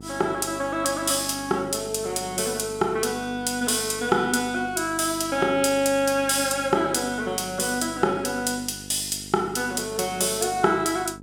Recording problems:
hum; 50 Hz, harmonics up to 850 Hz, SNR 18 dB

